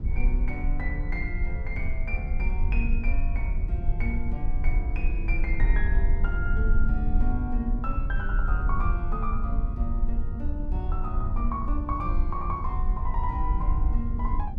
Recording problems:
low-frequency rumble; below 54 Hz, SNR -6 dB

